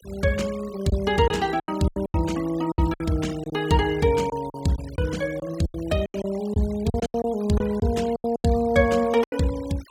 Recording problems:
denoising artefacts; signal-to-artefact ratio 19 dB
packet loss; 12% of the sound replaced, filled with silence

